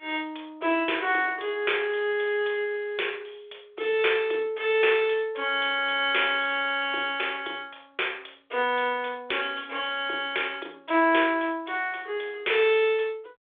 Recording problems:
telephone audio; 280 Hz to 3.6 kHz, G.726

